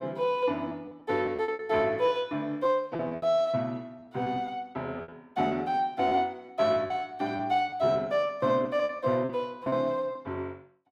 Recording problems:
packet loss; 10% of the sound replaced, filled with repeated pitch periods

